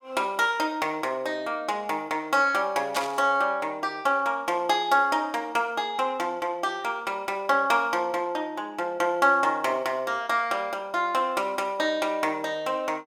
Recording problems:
burst of static; at 3 s; peak -3 dB vs average level

